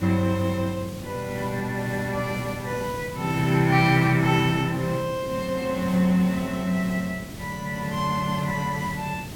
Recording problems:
hiss; SNR 13 dB

